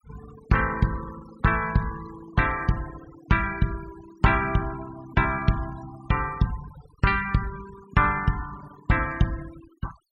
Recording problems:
denoising artefacts; signal-to-artefact ratio 17 dB

